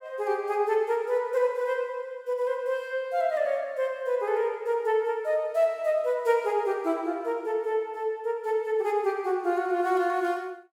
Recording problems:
none

